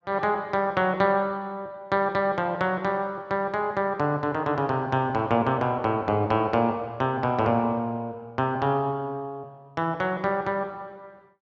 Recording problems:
none

